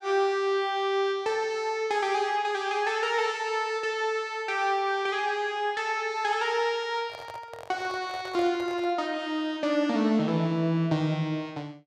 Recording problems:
microphone handling noise; from 7 to 9 s; peak -9 dB vs average level

